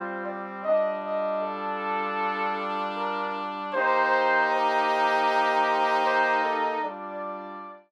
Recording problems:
none

